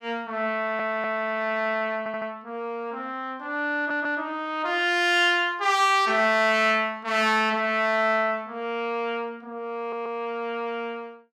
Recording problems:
stutter; 4 times, first at 0.5 s

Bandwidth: 16.5 kHz